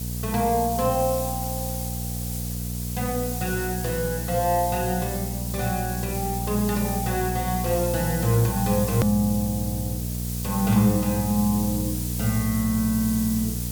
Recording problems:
electrical hum; 60 Hz, harmonics up to 540 Hz, SNR 5 dB
hiss; SNR 6 dB
hard cut with a click; at 9 s

